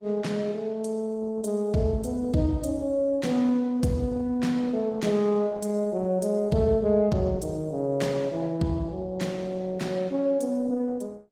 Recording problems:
lossy compression; Opus, log-spectral distance 2 dB, nothing above 18.9 kHz

